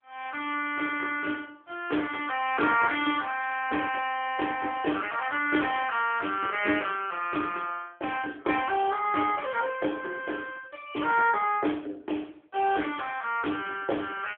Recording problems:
telephone audio; 260 Hz to 3.4 kHz, AMR-NB

